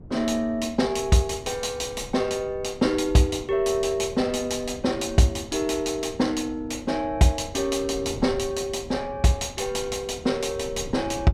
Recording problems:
wind on the microphone; below 250 Hz, SNR 17 dB

